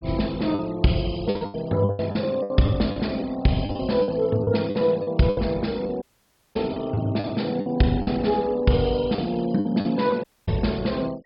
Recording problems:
treble missing; nothing above 5.5 kHz
noise reduction artefacts; signal-to-artefact ratio 24 dB
packet loss; 12% of the sound replaced, filled with the last packet
audio cutting out; at 6 s for 0.5 s and at 10 s

